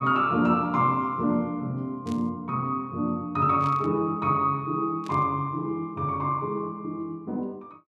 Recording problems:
static burst; at 2 s, at 3.5 s and at 5 s; peak -14 dB vs average level

